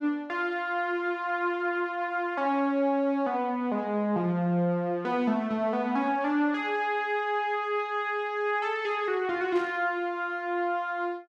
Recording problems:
burst of static; at 9.5 s; peak -12 dB vs average level

